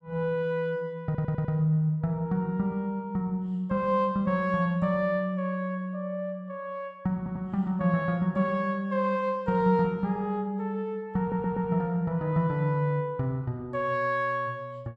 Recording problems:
stutter; at 1 s, at 7 s and at 11 s

